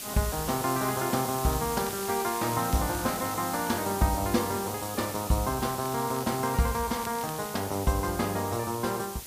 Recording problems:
hiss; slope +1 dB per octave, SNR 7 dB
crackling; from 1.5 to 3.5 s and from 6 to 7.5 s; loose cable, SNR 19 dB

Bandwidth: 15 kHz